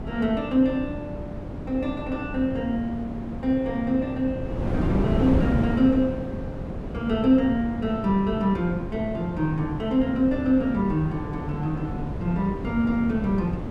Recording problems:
wind on the microphone; below 330 Hz, SNR 6 dB

